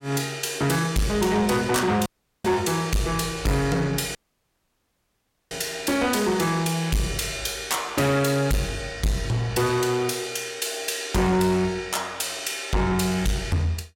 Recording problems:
distortion; soft clipping, signal-to-distortion ratio 7 dB
dropout; at 2 s and at 4 s for 1.5 s

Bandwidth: 16.5 kHz